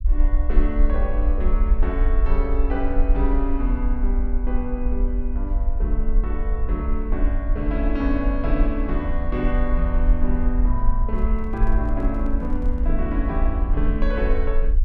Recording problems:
rumble; below 46 Hz, SNR -3 dB
microphone handling noise; from 11 to 13 s; peak -12 dB vs average level

